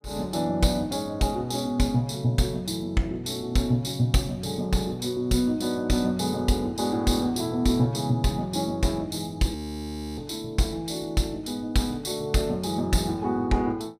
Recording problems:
audio freezing; at 9.5 s for 0.5 s

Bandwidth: 15.5 kHz